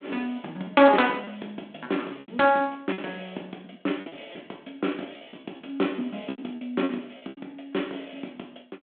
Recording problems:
telephone audio; 220 Hz to 3.6 kHz, G.726
lost packets; 10% of the sound replaced, filled with repeated pitch periods

